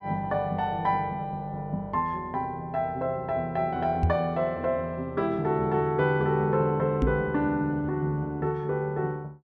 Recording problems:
microphone bump; at 4 s and at 7 s; peak +7 dB vs average level

